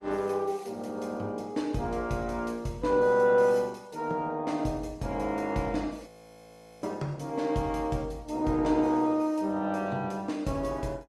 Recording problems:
lossy codec; Opus, log-spectral distance 2 dB, nothing above 13.1 kHz
audio freezing; at 6 s for 1 s

